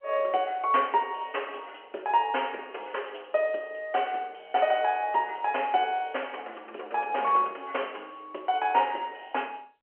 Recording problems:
telephone audio; 320 Hz to 3.2 kHz, G.711

